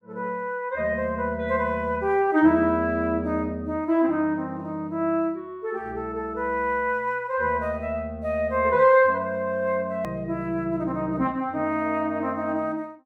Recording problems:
hard cut with a click; at 10 s

